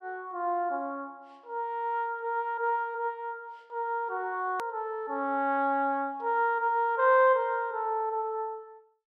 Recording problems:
edit click; at 4.5 s

